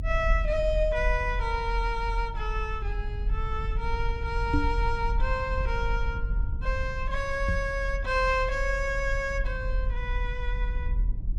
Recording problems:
rumble; below 52 Hz, strongest tone 40 Hz, SNR 2 dB
knock on the microphone; at 4.5 s and at 7.5 s; peak +6 dB vs average level

